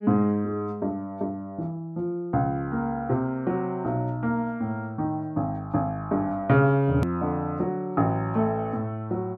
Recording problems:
click at an edit; at 7 s

